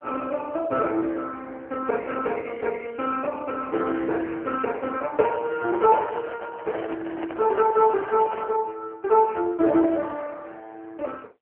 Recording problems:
phone line; 280 Hz to 2.3 kHz, AMR-NB
microphone handling noise; from 5.5 to 8.5 s; peak -5 dB vs average level

